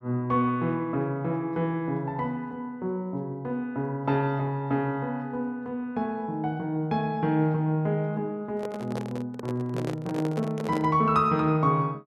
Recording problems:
microphone handling noise; from 8.5 to 11 s; peak -3 dB vs average level

